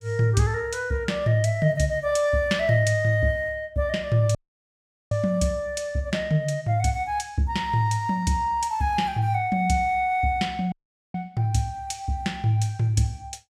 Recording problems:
audio cutting out; at 4.5 s for 1 s and at 11 s

